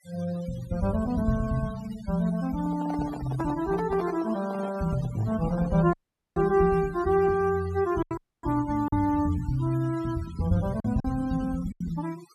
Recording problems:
denoising artefacts; signal-to-artefact ratio 18 dB
packet loss; 2% of the sound replaced, filled with silence
handling noise; from 2.5 to 6.5 s; peak -6 dB vs average level
dropout; at 6 s and at 8 s

